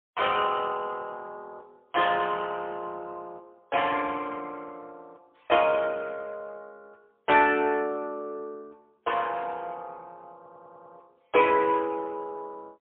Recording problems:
telephone audio; 240 Hz to 3.5 kHz, AMR-NB, then MP3
audio stuttering; at 10 s

